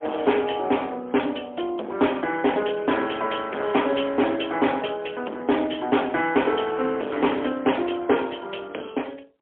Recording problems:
telephone audio; 260 Hz to 3.4 kHz, AMR-NB, then MP3
distorted audio; hard clipping, signal-to-distortion ratio 11 dB

